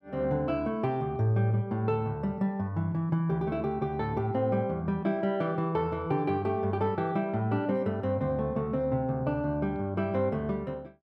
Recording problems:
none

